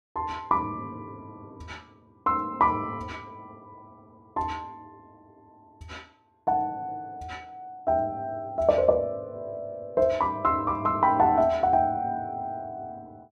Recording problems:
none

